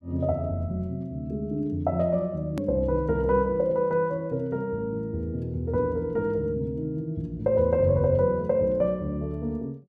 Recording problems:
hard cut with a click; at 2.5 s

